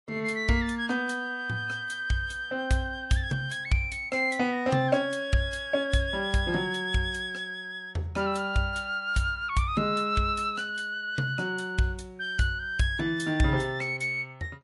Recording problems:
codec artefacts; MP3, log-spectral distance 2 dB, nothing above 11 kHz

